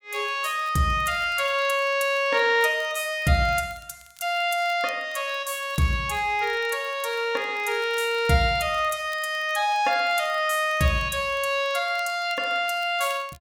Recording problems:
crackle; vinyl, SNR 28 dB

